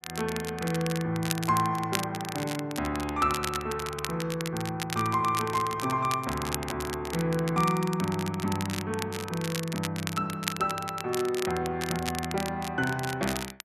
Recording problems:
crackling; vinyl, SNR 8 dB

